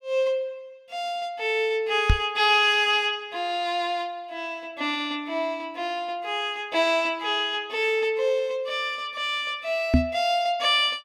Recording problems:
microphone bump; at 2 s and at 10 s; peak +9 dB vs average level

